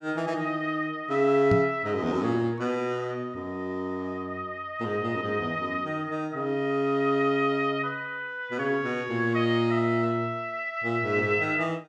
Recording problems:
microphone bump; at 1.5 s; peak +4 dB vs average level

